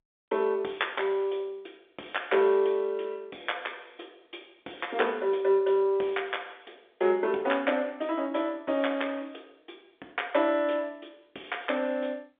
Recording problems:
telephone audio; 280 Hz to 3.6 kHz, G.711

